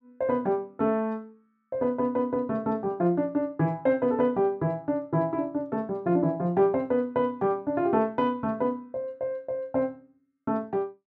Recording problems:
none

